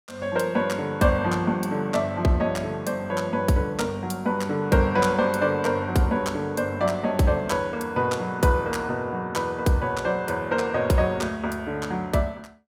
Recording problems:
none

